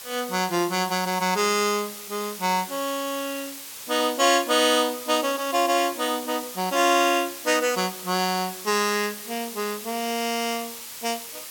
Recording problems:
hiss; slope +1 dB per octave, SNR 11 dB

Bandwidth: 17 kHz